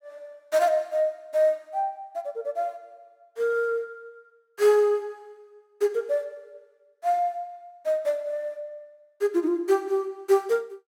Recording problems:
none

